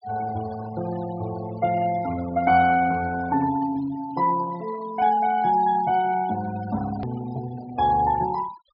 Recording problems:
low-pass filter; nothing above 5.5 kHz
denoising artefacts; signal-to-artefact ratio 17 dB
hard cut with a click; at 7 s

